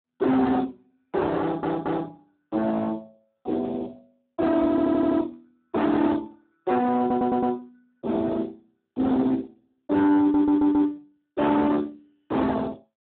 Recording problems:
phone line; 900 Hz to 2.3 kHz, Speex
distortion; hard clipping, signal-to-distortion ratio 7 dB
stutter; 4 times, first at 1.5 s

